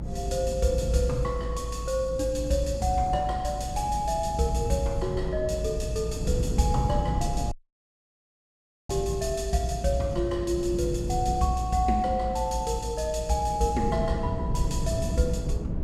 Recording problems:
hum; 60 Hz, harmonics up to 660 Hz, SNR 14 dB
rumble; below 150 Hz, SNR 4 dB
audio cutting out; at 7.5 s for 1.5 s

